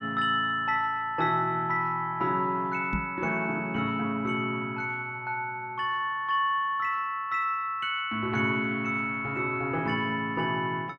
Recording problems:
microphone bump; at 3 s; peak 0 dB vs average level

